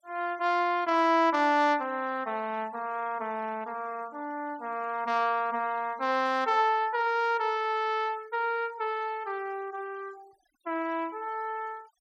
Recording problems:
noise reduction artefacts; signal-to-artefact ratio 26 dB

